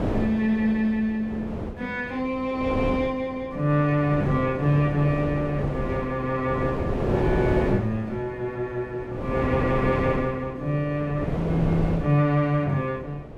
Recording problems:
wind noise; below 510 Hz, SNR 5 dB

